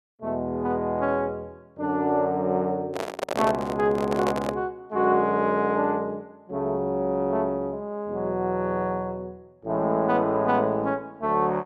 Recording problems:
handling noise; from 3 to 4.5 s; peak +2 dB vs average level

